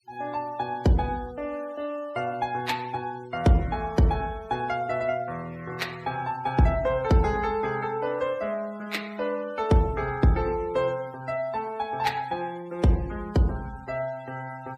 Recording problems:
noise reduction artefacts; signal-to-artefact ratio 22 dB

